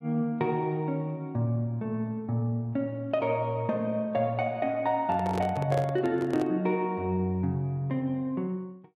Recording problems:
microphone handling noise; from 5 to 6.5 s; peak -1 dB vs average level

